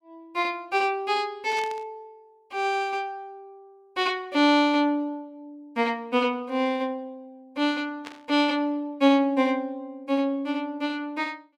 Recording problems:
burst of static; at 1.5 s and at 8 s; peak -9 dB vs average level

